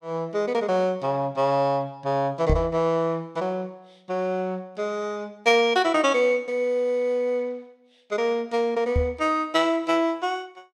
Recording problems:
knock on the microphone; at 2.5 s and at 9 s; peak +4 dB vs average level

